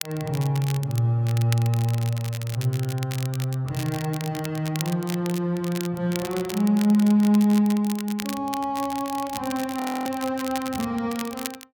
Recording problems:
crackle; vinyl, SNR 13 dB
audio freezing; at 10 s

